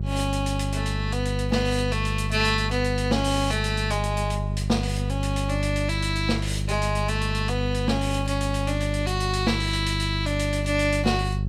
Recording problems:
mains hum; 50 Hz, harmonics up to 400 Hz, SNR 2 dB

